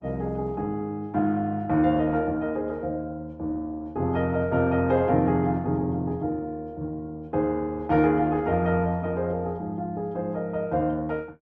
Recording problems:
codec artefacts; Opus, log-spectral distance 2 dB

